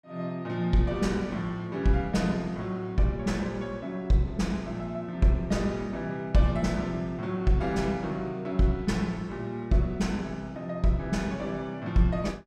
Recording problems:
none

